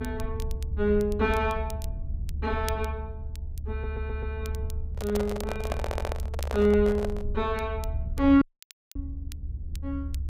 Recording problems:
rumble; below 74 Hz, SNR 7 dB
crackling; vinyl, SNR 21 dB
stutter; at 3.5 s and at 6 s
handling noise; from 5 to 7.5 s; peak 0 dB vs average level
audio cutting out; at 8.5 s for 0.5 s

